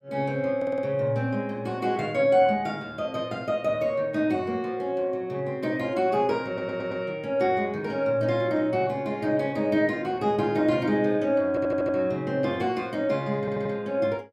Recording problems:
audio stuttering; 4 times, first at 0.5 s

